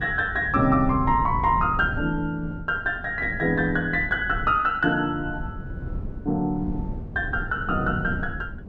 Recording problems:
low-frequency rumble; below 170 Hz, SNR 10 dB

